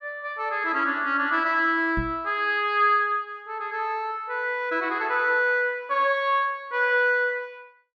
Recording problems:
microphone thump; at 2 s; peak -3 dB vs average level

